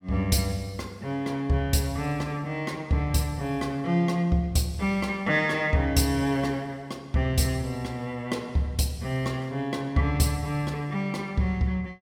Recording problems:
none

